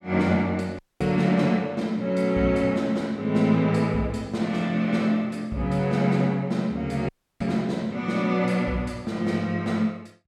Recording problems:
audio cutting out; at 1 s and at 7 s

